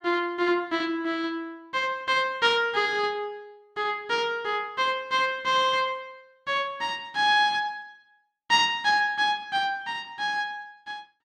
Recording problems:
none

